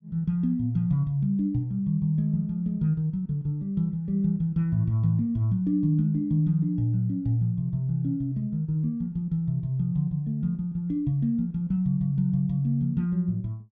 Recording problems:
none

